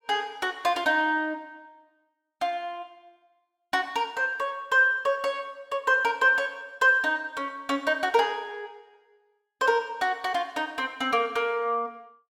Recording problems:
none

